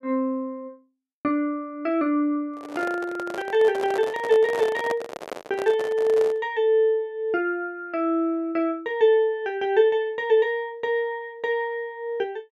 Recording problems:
microphone handling noise; from 2.5 to 6.5 s; peak -3 dB vs average level

